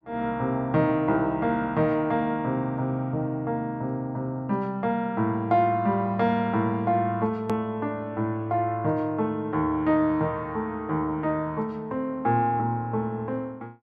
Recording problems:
click at an edit; at 7.5 s

